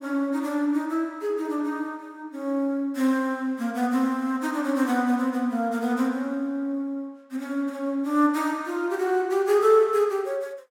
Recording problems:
none

